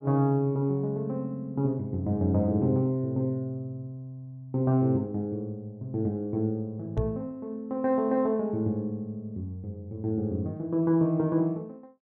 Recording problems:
microphone thump; at 7 s; peak +4 dB vs average level

